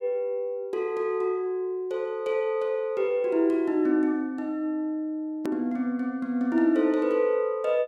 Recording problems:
hard cut with a click; at 5.5 s

